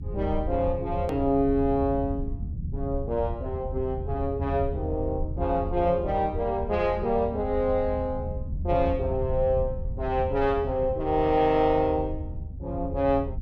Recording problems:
low-frequency rumble; below 90 Hz, SNR 8 dB
click at an edit; at 1 s

